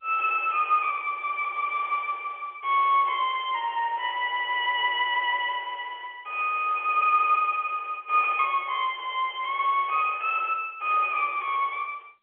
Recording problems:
telephone audio; 300 Hz to 3.3 kHz, G.711

